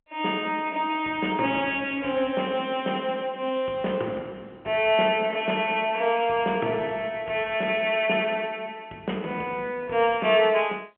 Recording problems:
telephone audio; 240 Hz to 3.4 kHz, G.711

